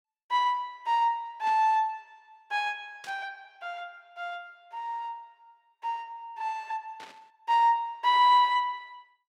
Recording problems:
burst of static; at 1.5 s, at 3 s and at 7 s; peak -13 dB vs average level

